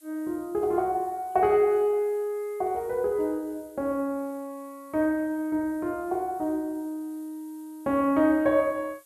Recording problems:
hiss; slope +1 dB per octave, SNR 28 dB

